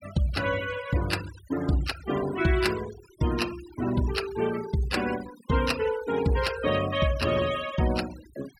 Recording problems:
noise reduction artefacts; signal-to-artefact ratio 14 dB

